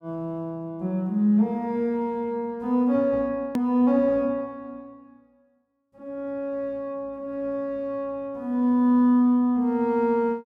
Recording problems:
edit click; at 3.5 s

